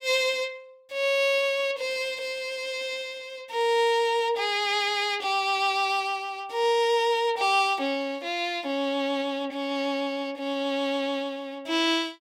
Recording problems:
none

